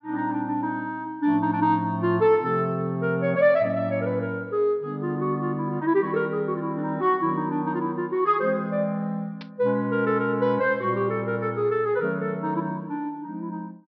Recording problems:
treble cut off; nothing above 5.5 kHz
static burst; at 9.5 s; peak -13 dB vs average level

